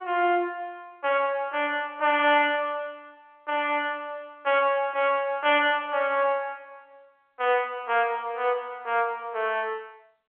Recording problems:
phone line; 370 Hz to 3.3 kHz, G.711

